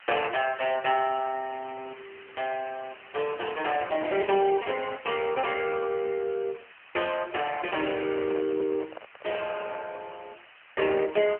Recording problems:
telephone audio; 340 Hz to 3.1 kHz, AMR-NB
background hiss; SNR 20 dB
microphone handling noise; from 7.5 to 10 s; peak -7 dB vs average level

